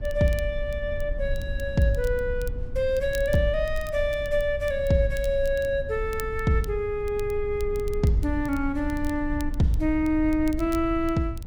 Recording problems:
rumble; below 66 Hz, SNR 9 dB
crackle; vinyl, SNR 23 dB

